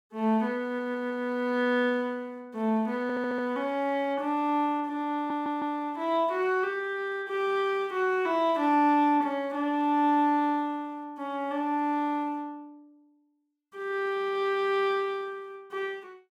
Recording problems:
stutter; at 0.5 s, at 3 s and at 5 s

